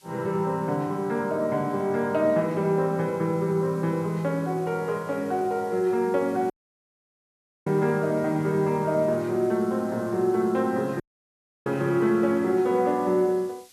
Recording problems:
background hiss; SNR 27 dB
dropout; at 6.5 s for 1 s and at 11 s for 0.5 s

